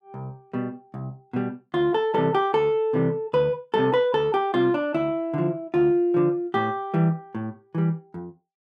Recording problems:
none

